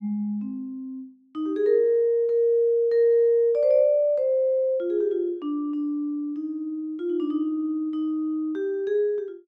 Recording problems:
none

